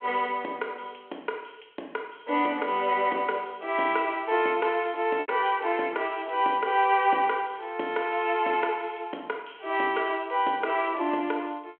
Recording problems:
phone line; 260 Hz to 3.3 kHz, G.726
lost packets; 0.7% of the sound replaced, filled with repeated pitch periods

